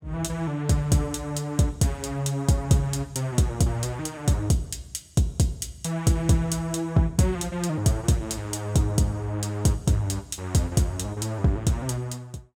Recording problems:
none

